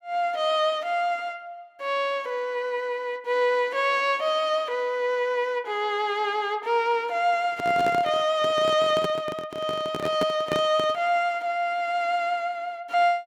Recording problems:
handling noise; from 7.5 to 11 s; peak 0 dB vs average level

